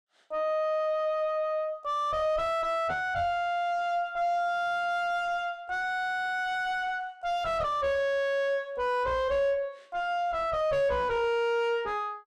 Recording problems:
distorted audio; soft clipping, signal-to-distortion ratio 2 dB

